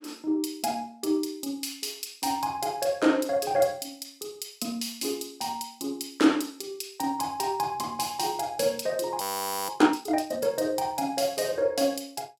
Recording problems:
audio freezing; at 9 s

